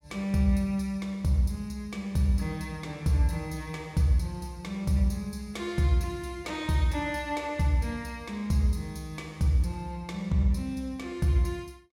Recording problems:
none

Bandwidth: 16.5 kHz